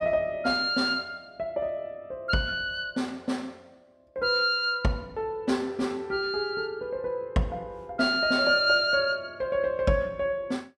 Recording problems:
none

